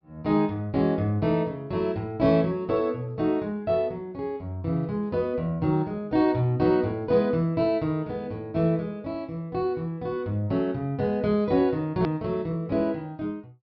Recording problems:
treble cut off; nothing above 5.5 kHz
hard cut with a click; at 12 s

